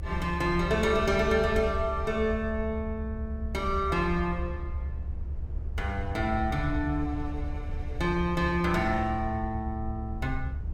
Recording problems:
rumble; below 76 Hz, SNR 6 dB

